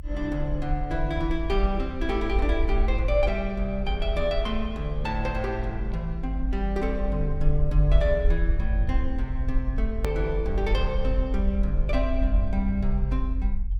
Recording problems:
low-frequency rumble; below 50 Hz, SNR 0 dB
edit click; at 10 s

